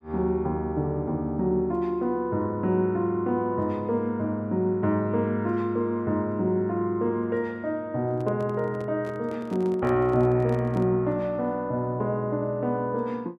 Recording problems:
microphone handling noise; from 8 to 11 s; peak -9 dB vs average level

